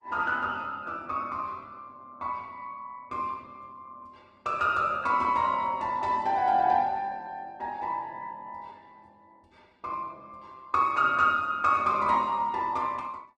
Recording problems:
lossy compression; Opus, log-spectral distance 2 dB

